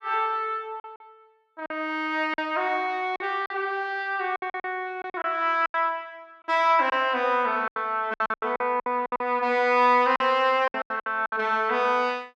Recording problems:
lost packets; 11% of the sound replaced, filled with silence

